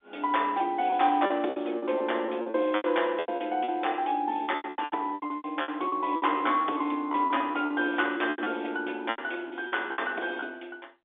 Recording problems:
phone line; 260 Hz to 3.6 kHz, G.711
lost packets; 16% of the sound replaced, filled with repeated pitch periods

